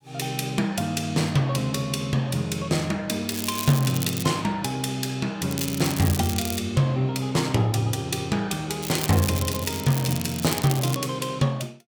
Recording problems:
crackle; at 3.5 s, from 5.5 to 6.5 s and from 9 to 11 s; loose cable, SNR 7 dB

